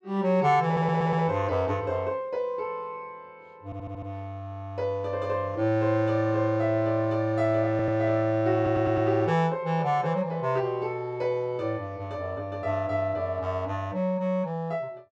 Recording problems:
stutter; 4 times, first at 0.5 s

